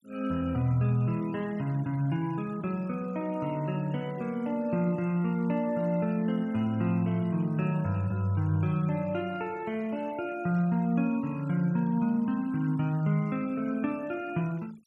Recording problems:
noise reduction artefacts; signal-to-artefact ratio 26 dB

